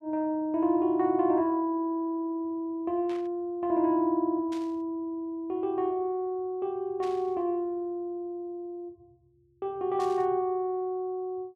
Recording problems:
static burst; 4 times, first at 3 s; peak -13 dB vs average level

